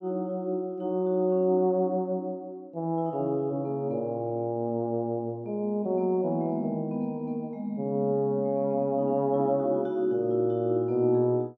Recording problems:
none

